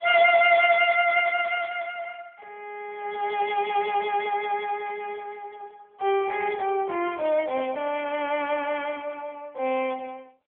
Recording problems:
phone line; 300 Hz to 3.3 kHz, AMR-NB

